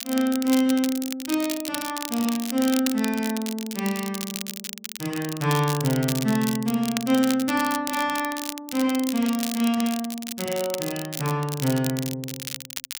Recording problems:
crackling; vinyl, SNR 8 dB

